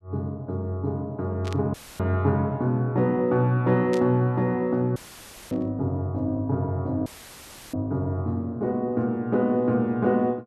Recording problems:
burst of static; at 1.5 s, at 4 s and at 5.5 s; peak -9 dB vs average level
audio cutting out; at 1.5 s, at 5 s for 0.5 s and at 7 s for 0.5 s; filled with static

